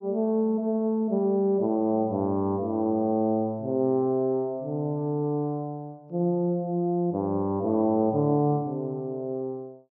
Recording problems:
none

